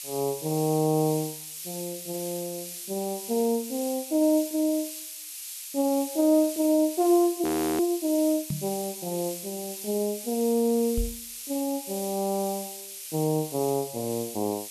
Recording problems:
hiss; slope +7 dB per octave, SNR 9 dB
frozen audio; at 7.5 s
microphone thump; at 8.5 s and at 11 s; peak -1 dB vs average level

